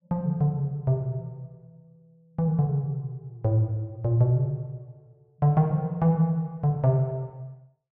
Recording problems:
none

